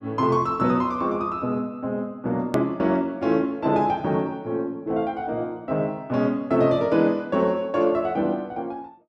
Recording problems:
click at an edit; at 2.5 s

